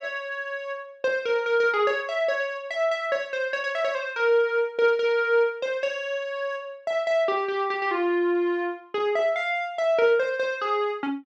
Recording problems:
none

